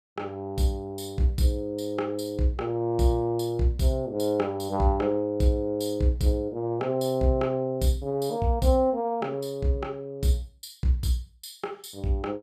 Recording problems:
none

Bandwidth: 14.5 kHz